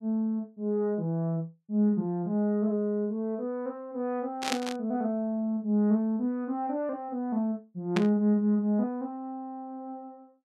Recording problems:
burst of static; at 4.5 s and at 8 s; peak +3 dB vs average level

